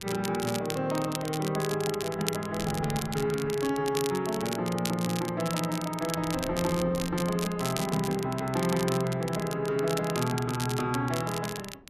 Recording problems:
wind on the microphone; below 380 Hz, SNR 19 dB
crackle; vinyl, SNR 9 dB

